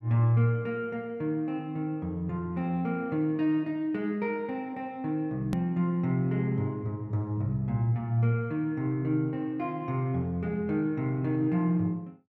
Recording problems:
hard cut with a click; at 5.5 s

